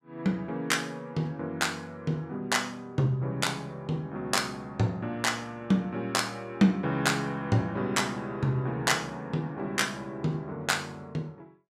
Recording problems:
none

